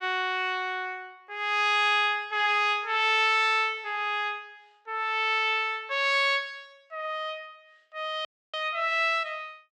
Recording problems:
dropout; at 8.5 s

